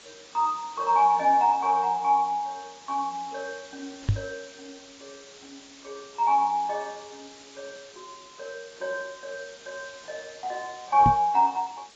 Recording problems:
codec artefacts; AAC, log-spectral distance 13 dB
background hiss; slope 0 dB per octave, SNR 22 dB
knock on the microphone; at 4 s and at 11 s; peak +4 dB vs average level

